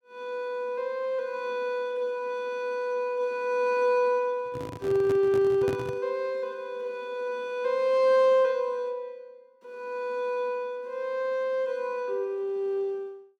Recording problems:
microphone handling noise; from 4.5 to 6 s; peak -2 dB vs average level

